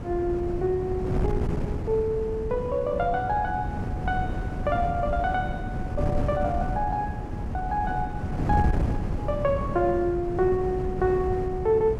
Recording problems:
wind on the microphone; below 230 Hz, SNR 3 dB

